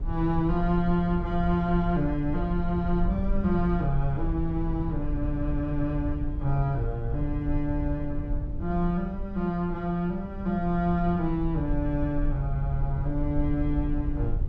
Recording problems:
rumble; below 72 Hz, SNR 5 dB

